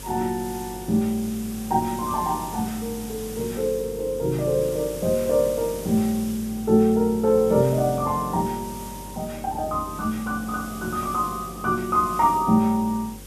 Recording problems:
electrical hum; 50 Hz, harmonics up to 550 Hz, SNR 19 dB
background hiss; slope -1 dB per octave, SNR 16 dB

